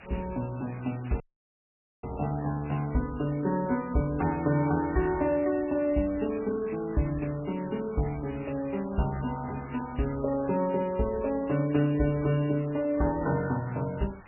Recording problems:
lossy codec; MP3, log-spectral distance 9 dB, nothing above 2.6 kHz
background hiss; SNR 21 dB
dropout; at 1 s for 1 s

